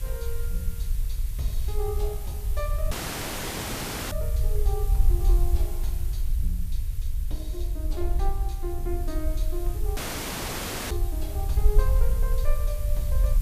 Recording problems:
mains hum; 50 Hz, harmonics up to 550 Hz, SNR 25 dB
hiss; slope 0 dB per octave, SNR 8 dB
rumble; below 54 Hz, SNR -8 dB
audio cutting out; at 3 s for 1 s and at 10 s for 1 s

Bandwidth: 14.5 kHz